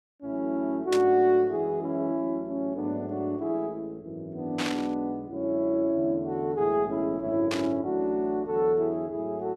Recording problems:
burst of static; at 1 s, at 4.5 s and at 7.5 s; peak -1 dB vs average level

